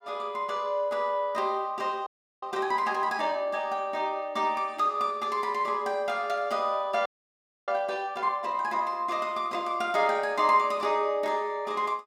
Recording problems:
audio freezing; at 2 s and at 7 s for 0.5 s

